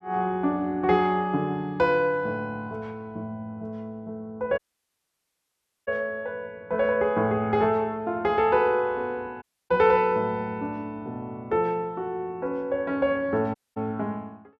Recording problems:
dropout; at 4.5 s for 1.5 s, at 9.5 s and at 14 s

